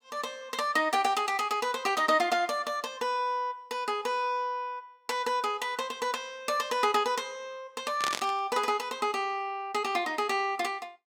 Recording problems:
static burst; at 8 s; peak +2 dB vs average level

